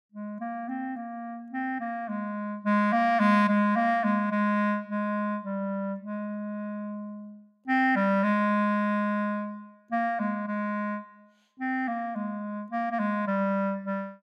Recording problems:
none

